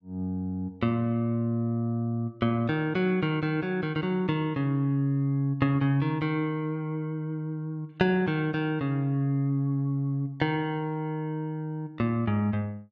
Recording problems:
none

